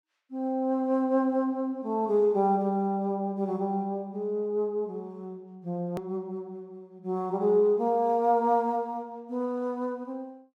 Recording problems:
edit click; at 6 s

